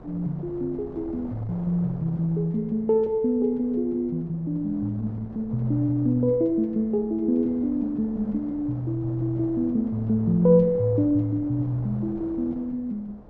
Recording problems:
wind on the microphone; below 510 Hz, SNR 18 dB

